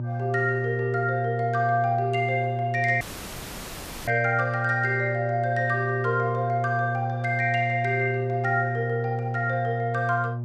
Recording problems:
hum; 60 Hz, harmonics up to 600 Hz, SNR 5 dB
audio cutting out; at 3 s for 1 s

